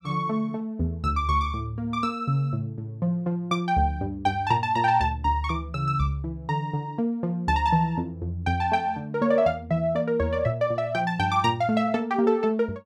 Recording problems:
none

